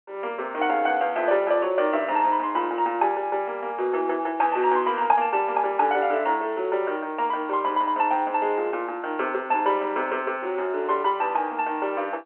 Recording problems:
phone line; 280 Hz to 3.2 kHz, G.711

